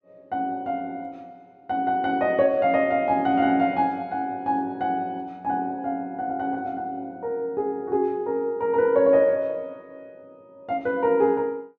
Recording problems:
none

